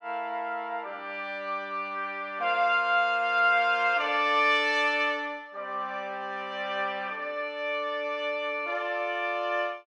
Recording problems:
none

